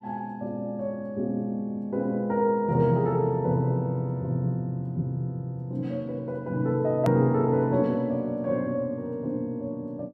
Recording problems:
click at an edit; at 7 s

